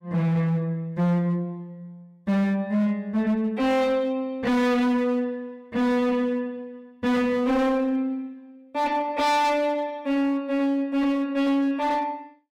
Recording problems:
distorted audio; hard clipping, signal-to-distortion ratio 8 dB

